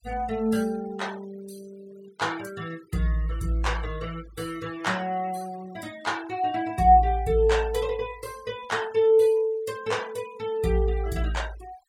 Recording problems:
noise reduction artefacts; signal-to-artefact ratio 23 dB

